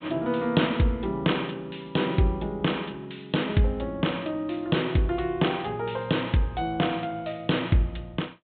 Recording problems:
low-pass filter; nothing above 4 kHz

